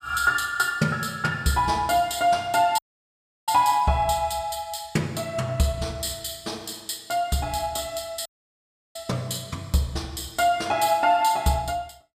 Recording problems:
dropout; at 3 s for 0.5 s and at 8.5 s for 0.5 s

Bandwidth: 15 kHz